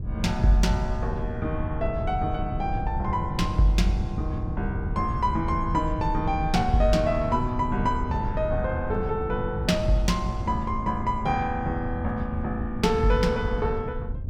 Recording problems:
wind noise; below 120 Hz, SNR 6 dB

